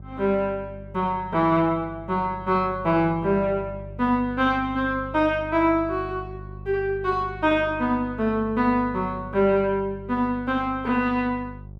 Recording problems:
hum; 50 Hz, harmonics up to 550 Hz, SNR 16 dB

